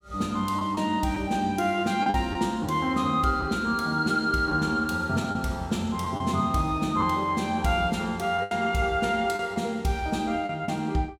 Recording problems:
packet loss; 4% of the sound replaced, filled with the last packet

